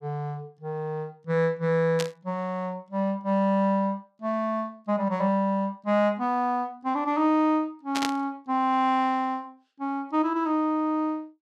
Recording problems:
burst of static; at 2 s and at 8 s; peak +1 dB vs average level

